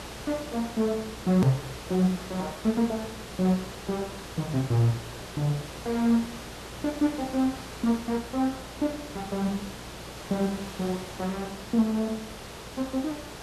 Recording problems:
hum; 60 Hz, harmonics up to 300 Hz, SNR 21 dB
background hiss; slope -4 dB per octave, SNR 11 dB
hard cut with a click; at 1.5 s

